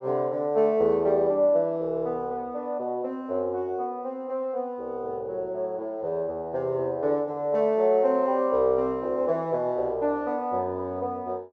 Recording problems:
none

